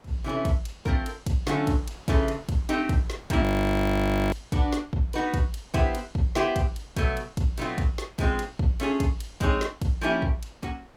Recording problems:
wind noise; below 1.2 kHz, SNR 26 dB
audio freezing; at 3.5 s for 1 s

